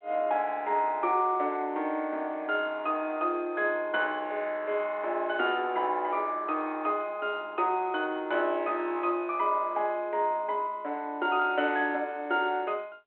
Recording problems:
phone line; 240 Hz to 3.3 kHz, G.726

